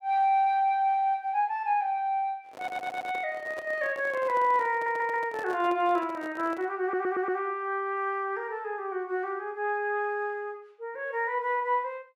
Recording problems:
handling noise; from 2.5 to 7 s; peak -9 dB vs average level
stutter; at 2.5 s, at 4.5 s and at 7 s

